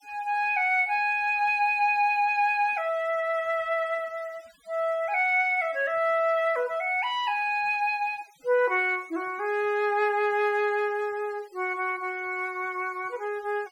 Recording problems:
denoising artefacts; signal-to-artefact ratio 27 dB

